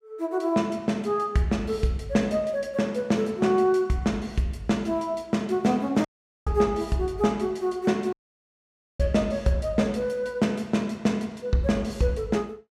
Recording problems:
audio cutting out; at 6 s and at 8 s for 1 s

